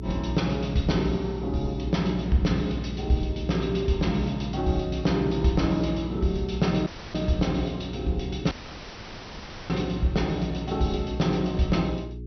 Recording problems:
treble cut off; nothing above 6 kHz
hum; 60 Hz, harmonics up to 420 Hz, SNR 10 dB
audio cutting out; at 7 s and at 8.5 s for 1 s

